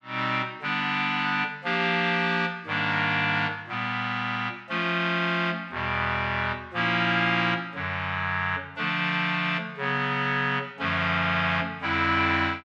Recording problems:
none

